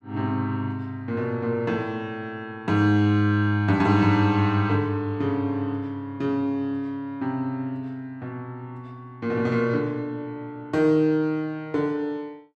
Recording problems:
none

